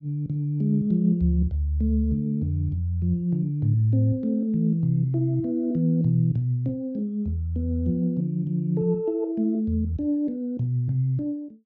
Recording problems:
none

